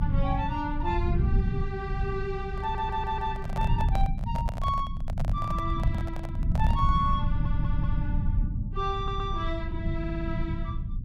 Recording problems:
low-frequency rumble; below 120 Hz, SNR -2 dB
microphone handling noise; from 2.5 to 7 s; peak 0 dB vs average level
stutter; 4 times, first at 2.5 s

